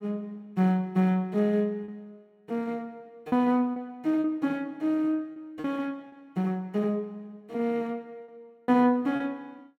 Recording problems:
packet loss; 4% of the sound replaced, filled with repeated pitch periods

